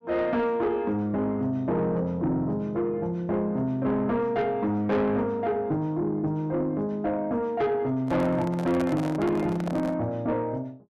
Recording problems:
distorted audio; soft clipping, signal-to-distortion ratio 11 dB
microphone handling noise; from 8 to 10 s; peak -1 dB vs average level

